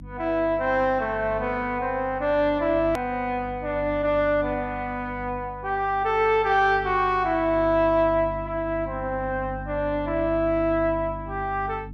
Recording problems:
hum; 50 Hz, harmonics up to 300 Hz, SNR 15 dB
click at an edit; at 3 s

